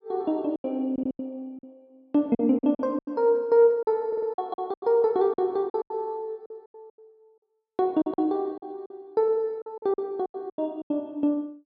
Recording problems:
packet loss; 14% of the sound replaced, filled with silence
audio stuttering; at 1 s and at 4 s

